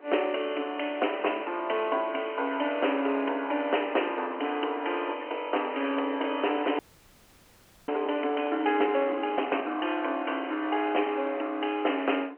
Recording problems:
telephone audio; 240 Hz to 3.1 kHz, G.711
wind on the microphone; below 930 Hz, SNR 23 dB
audio freezing; at 7 s for 1 s

